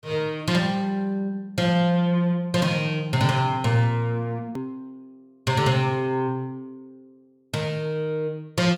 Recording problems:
edit click; at 4.5 s

